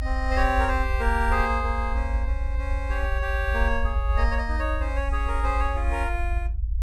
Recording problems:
low-frequency rumble; below 62 Hz, strongest tone 54 Hz, SNR 0 dB

